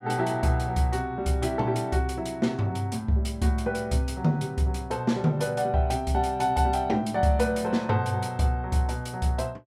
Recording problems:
none

